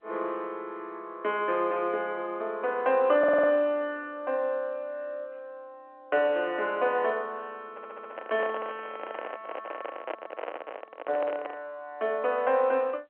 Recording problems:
telephone audio; 320 Hz to 3.1 kHz, G.711
audio stuttering; at 3 s and at 7.5 s
handling noise; from 7.5 to 12 s; peak -2 dB vs average level

